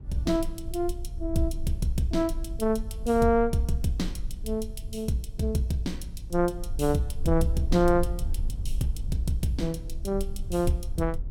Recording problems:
rumble; below 56 Hz, strongest tone 20 Hz, SNR 8 dB

